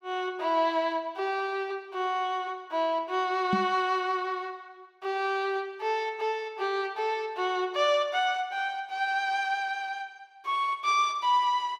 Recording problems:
microphone thump; at 3.5 s; peak +4 dB vs average level

